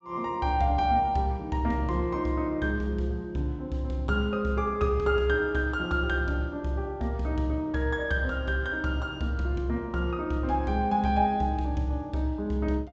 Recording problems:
low-pass filter; nothing above 8 kHz

